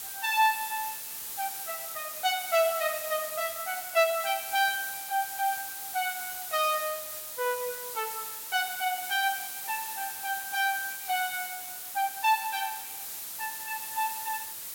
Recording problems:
background hiss; slope +1 dB per octave, SNR 5 dB

